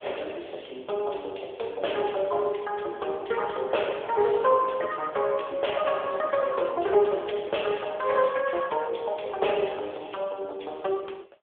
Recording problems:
telephone audio; 320 Hz to 3.4 kHz, AMR-NB

